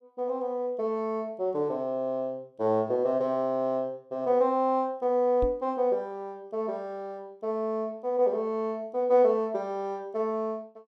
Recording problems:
knock on the microphone; at 5.5 s; peak -2 dB vs average level

